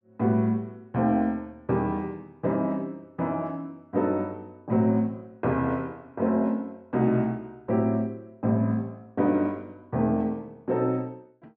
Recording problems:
none

